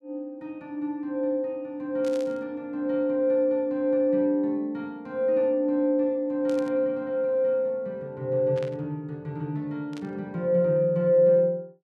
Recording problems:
burst of static; 4 times, first at 2 s; peak -13 dB vs average level

